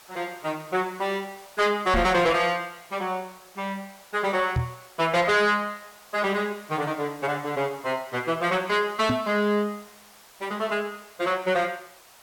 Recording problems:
distorted audio; soft clipping, signal-to-distortion ratio 10 dB
background hiss; SNR 23 dB
knock on the microphone; at 2 s, at 4.5 s and at 9 s; peak +3 dB vs average level

